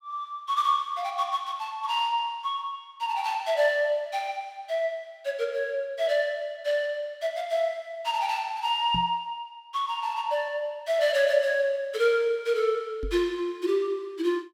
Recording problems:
knock on the microphone; at 9 s and at 13 s; peak -2 dB vs average level

